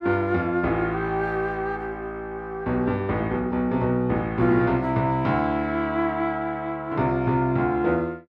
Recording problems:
none

